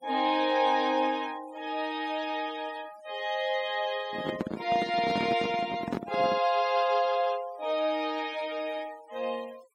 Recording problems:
denoising artefacts; signal-to-artefact ratio 21 dB
handling noise; from 4 to 6.5 s; peak +2 dB vs average level

